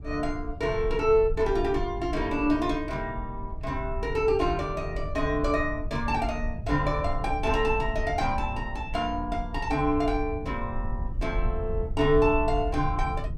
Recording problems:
rumble; below 72 Hz, SNR 8 dB

